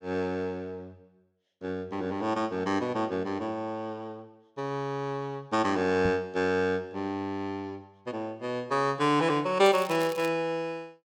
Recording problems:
microphone bump; at 6 s; peak 0 dB vs average level
crackle; at 9.5 s; loose cable, SNR 16 dB

